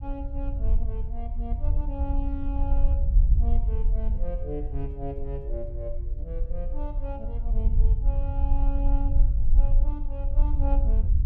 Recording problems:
rumble; below 52 Hz, SNR -11 dB

